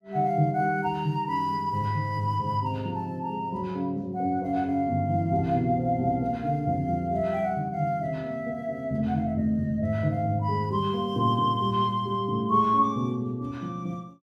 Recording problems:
none

